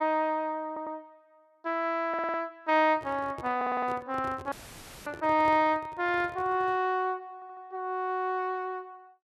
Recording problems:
audio stuttering; 4 times, first at 0.5 s
handling noise; from 3 to 7 s; peak -9 dB vs average level
dropout; at 4.5 s for 0.5 s; filled with static

